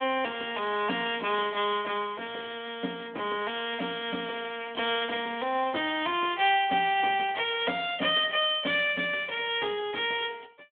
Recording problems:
telephone audio; 240 Hz to 3.4 kHz, Speex

